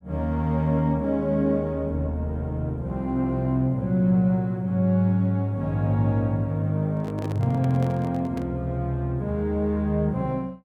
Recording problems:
microphone handling noise; from 7 to 8.5 s; peak -7 dB vs average level

